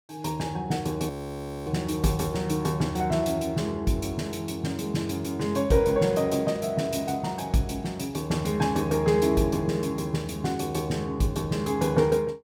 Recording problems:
audio freezing; at 1 s for 0.5 s

